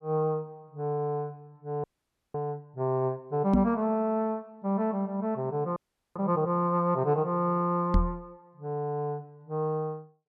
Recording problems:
frozen audio; at 2 s and at 6 s
microphone bump; at 3.5 s and at 8 s; peak +8 dB vs average level

